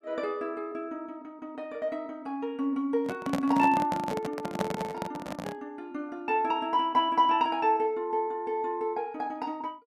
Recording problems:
handling noise; from 3 to 5.5 s; peak +3 dB vs average level

